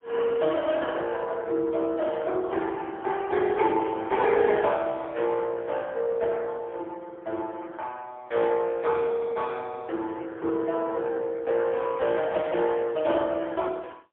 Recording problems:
phone line; 300 Hz to 3.4 kHz, AMR-NB, then MP3

